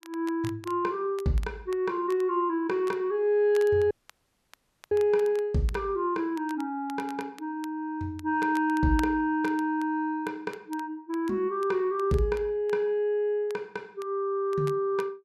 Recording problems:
crackling; vinyl, SNR 24 dB
dropout; at 4 s for 1 s

